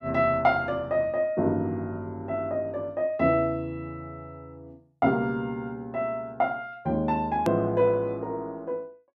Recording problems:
click at an edit; at 7.5 s

